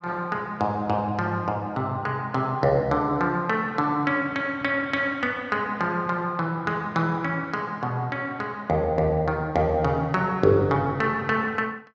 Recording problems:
none

